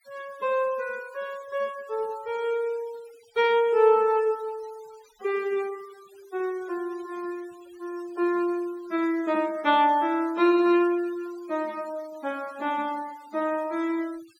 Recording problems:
denoising artefacts; signal-to-artefact ratio 25 dB

